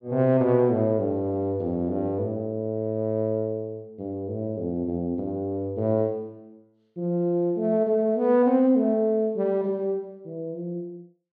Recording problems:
none

